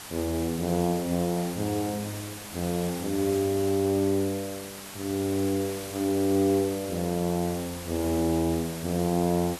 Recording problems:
hiss; slope -1 dB per octave, SNR 11 dB

